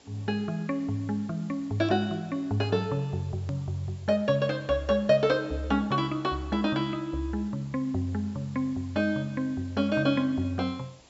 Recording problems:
treble missing; nothing above 7.6 kHz
background hiss; SNR 27 dB
click at an edit; at 3.5 s

